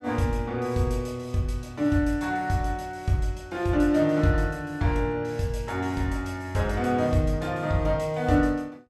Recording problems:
none

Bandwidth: 14.5 kHz